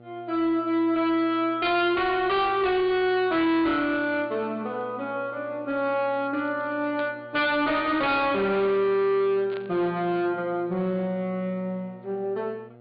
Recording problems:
low-pass filter; nothing above 4.6 kHz
distorted audio; hard clipping, signal-to-distortion ratio 8 dB
hum; 60 Hz, harmonics up to 1.4 kHz, SNR 24 dB
static burst; at 7 s and at 9.5 s; peak -12 dB vs average level

